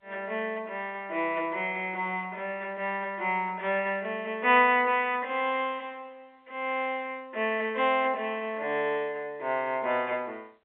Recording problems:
telephone audio; 300 Hz to 3.7 kHz, G.711

